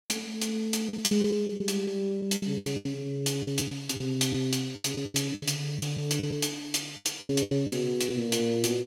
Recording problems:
packet loss; 13% of the sound replaced, filled with the last packet

